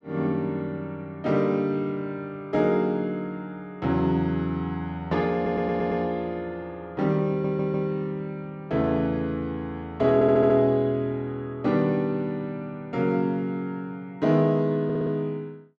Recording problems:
stutter; 4 times, first at 5.5 s

